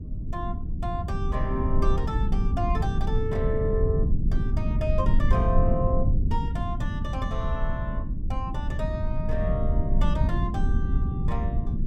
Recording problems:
rumble; below 100 Hz, SNR -5 dB

